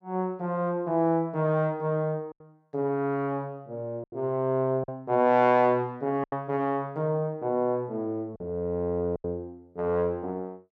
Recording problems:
packet loss; 4% of the sound replaced, filled with silence

